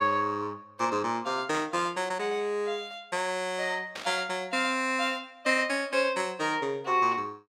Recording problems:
static burst; at 1.5 s and at 4 s; peak -5 dB vs average level

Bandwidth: 16 kHz